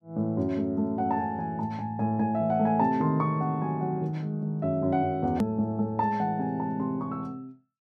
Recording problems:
edit click; at 5.5 s

